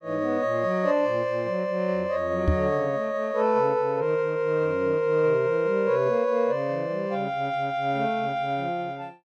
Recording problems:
microphone thump; at 2.5 s; peak +5 dB vs average level

